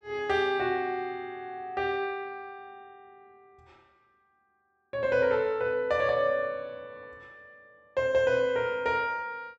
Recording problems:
none

